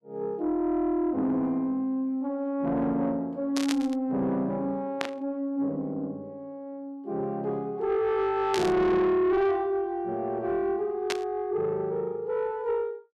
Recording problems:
distortion; soft clipping, signal-to-distortion ratio 10 dB
static burst; 4 times, first at 3.5 s; peak +1 dB vs average level

